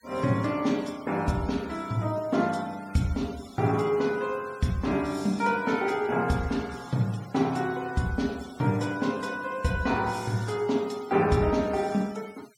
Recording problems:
denoising artefacts; signal-to-artefact ratio 21 dB

